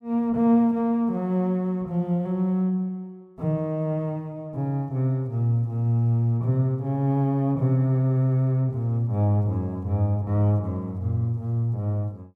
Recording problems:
none

